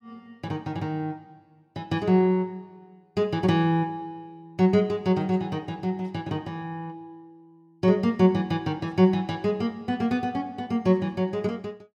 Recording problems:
none

